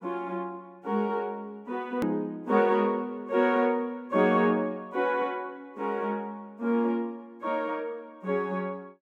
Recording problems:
click at an edit; at 2 s

